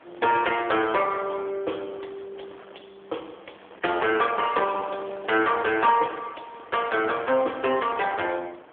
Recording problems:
telephone audio; 300 Hz to 3.4 kHz, AMR-NB
wind noise; below 1.5 kHz, SNR 21 dB

